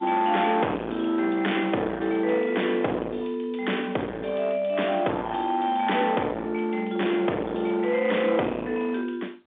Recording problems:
phone line; 240 Hz to 3.6 kHz, G.711
distortion; hard clipping, uneven, signal-to-distortion ratio 6 dB

